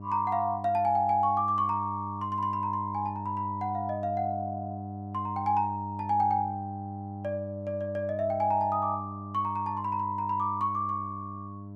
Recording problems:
hum; 50 Hz, harmonics up to 1 kHz, SNR 10 dB

